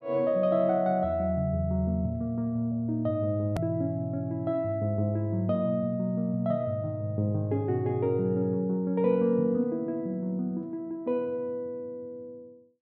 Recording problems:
edit click; at 3.5 s

